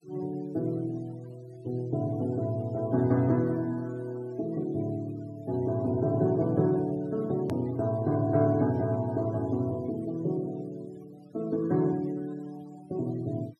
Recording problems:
noise reduction artefacts; signal-to-artefact ratio 25 dB
hard cut with a click; at 7.5 s

